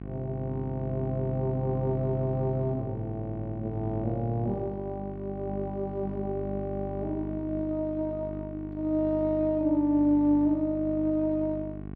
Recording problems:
electrical hum; 50 Hz, harmonics up to 1.1 kHz, SNR 9 dB

